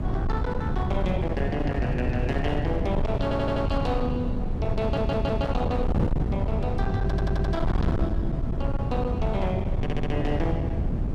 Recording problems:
distorted audio; hard clipping, signal-to-distortion ratio 6 dB
electrical hum; 50 Hz, harmonics up to 400 Hz, SNR 16 dB
wind noise; below 180 Hz, SNR -1 dB
audio stuttering; 4 times, first at 3 s

